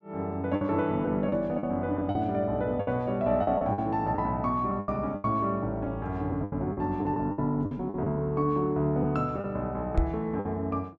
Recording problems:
packet loss; 9% of the sound replaced, filled with the last packet
microphone thump; at 10 s; peak +7 dB vs average level

